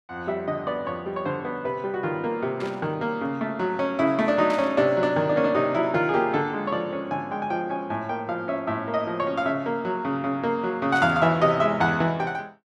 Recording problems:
static burst; at 2.5 s, at 4.5 s and at 11 s; peak -9 dB vs average level

